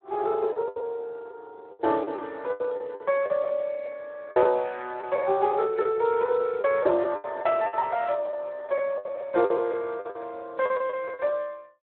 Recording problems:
phone line; 320 Hz to 4 kHz, Speex
packet loss; 12% of the sound replaced, filled with the last packet

